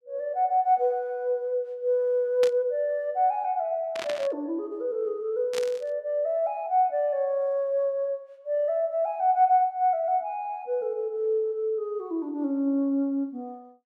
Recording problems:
burst of static; at 2.5 s, at 4 s and at 5.5 s; peak -3 dB vs average level

